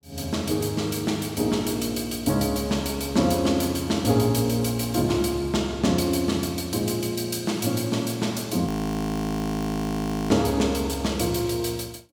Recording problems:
audio freezing; at 8.5 s for 1.5 s

